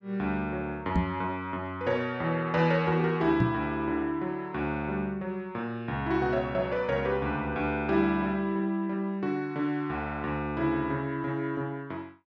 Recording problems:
knock on the microphone; at 1 s and at 3.5 s; peak +6 dB vs average level

